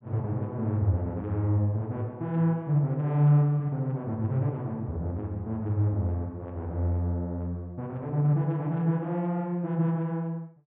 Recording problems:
treble cut off; nothing above 4 kHz

